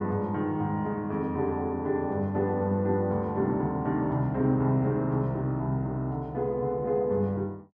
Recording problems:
none

